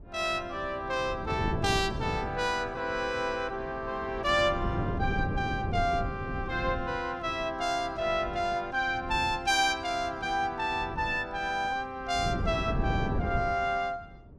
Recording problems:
wind noise; below 240 Hz, SNR 7 dB

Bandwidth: 15 kHz